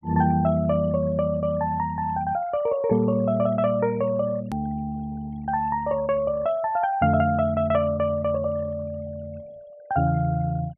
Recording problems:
treble cut off; nothing above 3.3 kHz
denoising artefacts; signal-to-artefact ratio 24 dB
edit click; at 4.5 s

